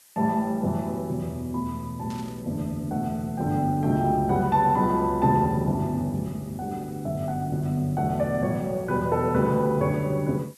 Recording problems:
background hiss; slope +1 dB per octave, SNR 26 dB
static burst; at 2 s; peak -15 dB vs average level

